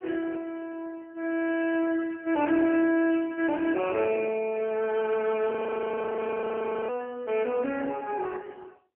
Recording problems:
phone line; 240 Hz to 3.3 kHz, AMR-NB
frozen audio; at 5.5 s for 1.5 s

